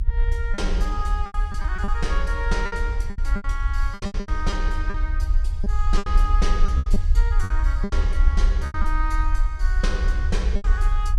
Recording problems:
rumble; below 56 Hz, strongest tone 32 Hz, SNR -6 dB
lost packets; 12% of the sound replaced, filled with repeated pitch periods

